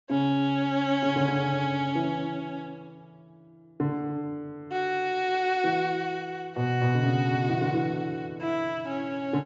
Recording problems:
treble missing; nothing above 7.4 kHz

